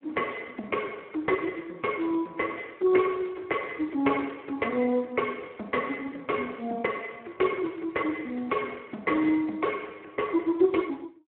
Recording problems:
phone line; 240 Hz to 3.2 kHz, Speex

